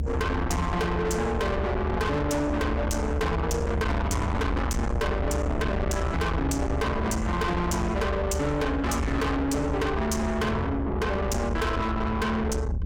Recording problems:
distortion; soft clipping, signal-to-distortion ratio 6 dB
low-frequency rumble; below 430 Hz, SNR 3 dB

